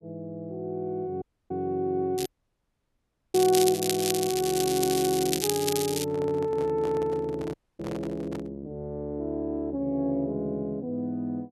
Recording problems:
audio cutting out; at 1 s, at 2.5 s for 1 s and at 7.5 s
crackling; from 2 to 6 s; loose cable, SNR 3 dB
microphone handling noise; from 6 to 8.5 s; peak -6 dB vs average level

